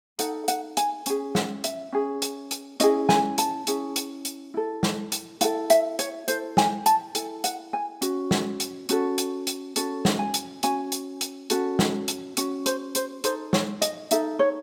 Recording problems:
none

